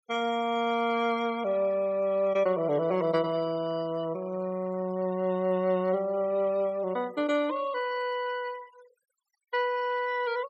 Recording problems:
denoising artefacts; signal-to-artefact ratio 21 dB

